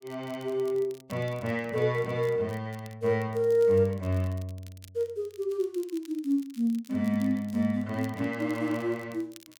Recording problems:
crackling; vinyl, SNR 25 dB

